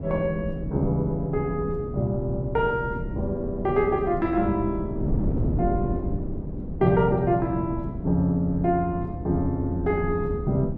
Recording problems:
wind on the microphone; below 240 Hz, SNR 6 dB

